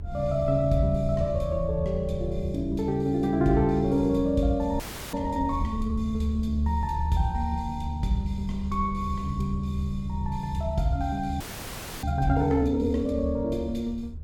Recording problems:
low-frequency rumble; below 78 Hz, SNR 10 dB
frozen audio; at 5 s and at 11 s for 0.5 s

